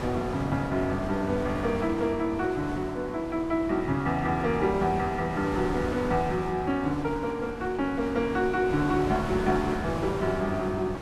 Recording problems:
wind noise; below 920 Hz, SNR 9 dB

